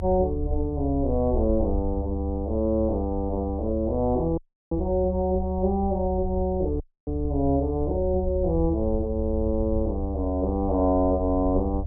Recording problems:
low-frequency rumble; below 74 Hz, strongest tone 72 Hz, SNR 6 dB
dropout; at 4.5 s and at 7 s

